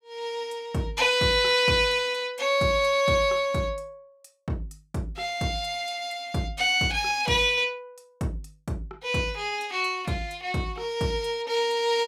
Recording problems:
none

